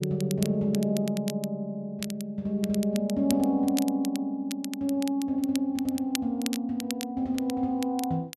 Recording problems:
crackling; vinyl, SNR 12 dB

